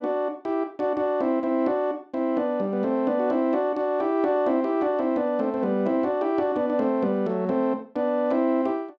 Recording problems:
none

